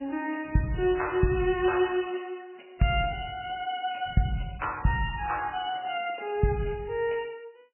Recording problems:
lossy codec; MP3, log-spectral distance 5 dB, nothing above 2.6 kHz

